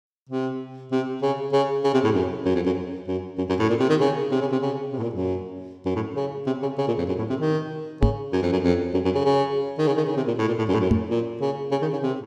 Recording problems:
microphone bump; at 8 s and at 11 s; peak +9 dB vs average level

